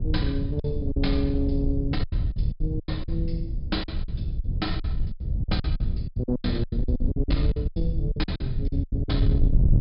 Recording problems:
treble cut off; nothing above 5.3 kHz
distorted audio; soft clipping, signal-to-distortion ratio 9 dB
low-frequency rumble; below 100 Hz, SNR -2 dB
lost packets; 15% of the sound replaced, filled with silence

